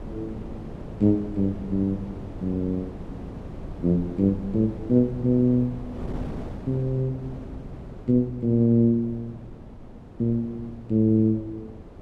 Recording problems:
wind noise; below 330 Hz, SNR 15 dB

